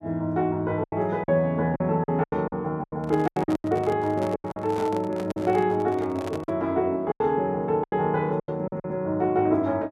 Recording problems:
packet loss; 11% of the sound replaced, filled with silence
microphone handling noise; from 3 to 6.5 s; peak -6 dB vs average level

